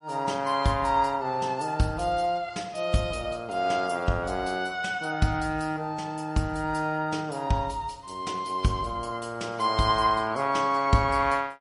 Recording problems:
lossy compression; MP3, log-spectral distance 3 dB, nothing above 10.4 kHz

